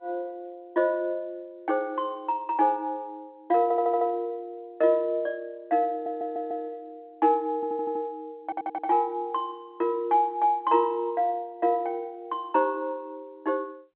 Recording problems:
telephone audio; 240 Hz to 3.9 kHz, G.711
stutter; 4 times, first at 3.5 s

